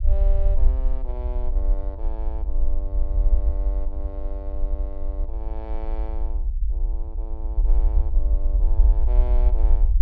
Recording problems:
rumble; below 50 Hz, SNR -14 dB

